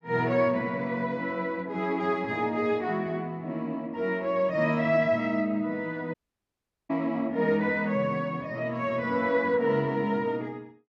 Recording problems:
audio cutting out; at 6 s for 1 s

